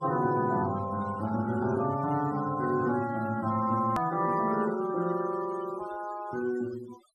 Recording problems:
noise reduction artefacts; signal-to-artefact ratio 18 dB
edit click; at 4 s

